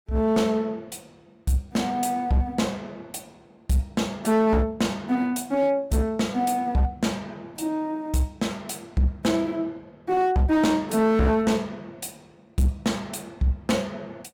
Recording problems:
distorted audio; hard clipping, uneven, signal-to-distortion ratio 11 dB

